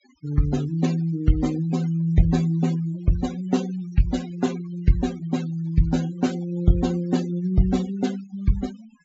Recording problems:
low-pass filter; nothing above 8 kHz
denoising artefacts; signal-to-artefact ratio 17 dB

